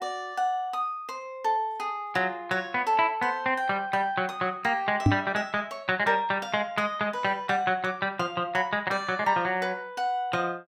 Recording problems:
microphone thump; at 5 s; peak +9 dB vs average level

